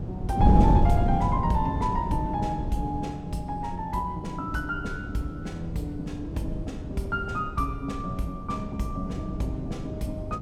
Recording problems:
wind on the microphone; below 200 Hz, SNR -1 dB

